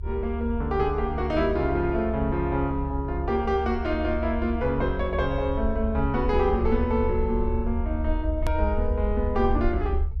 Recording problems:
low-frequency rumble; below 72 Hz, SNR 4 dB
click at an edit; at 8.5 s

